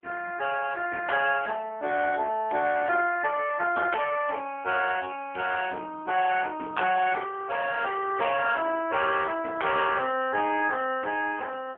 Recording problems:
phone line; 280 Hz to 3.2 kHz, AMR-NB

